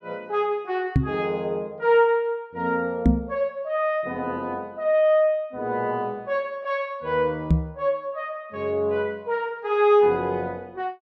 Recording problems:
microphone bump; at 1 s, at 3 s and at 7.5 s; peak +9 dB vs average level

